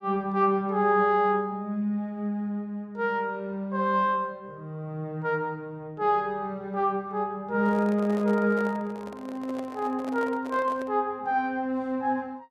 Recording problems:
handling noise; from 7.5 to 11 s; peak -9 dB vs average level

